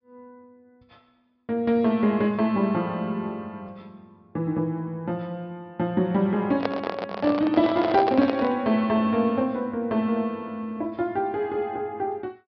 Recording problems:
low-pass filter; nothing above 5.5 kHz
handling noise; from 6.5 to 8.5 s; peak +3 dB vs average level

